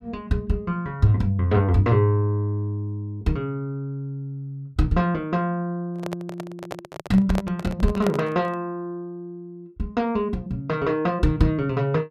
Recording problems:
microphone handling noise; from 6 to 8.5 s; peak +1 dB vs average level

